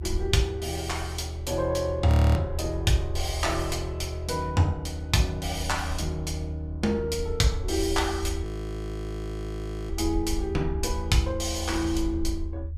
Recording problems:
low-frequency rumble; below 78 Hz, SNR 6 dB
frozen audio; at 2 s and at 8.5 s for 1.5 s

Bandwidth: 14.5 kHz